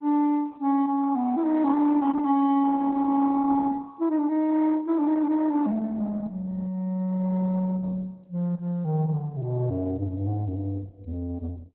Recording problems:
lossy compression; Opus, log-spectral distance 2 dB

